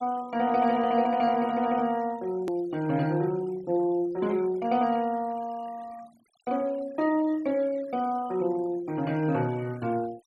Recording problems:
denoising artefacts; signal-to-artefact ratio 23 dB
hard cut with a click; at 2.5 s

